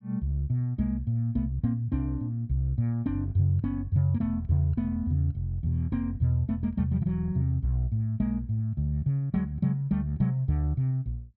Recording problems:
none

